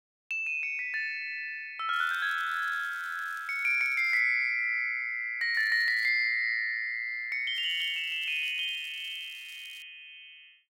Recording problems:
crackling; from 2 to 4 s, at 5.5 s and from 7.5 to 10 s; loose cable, SNR 26 dB

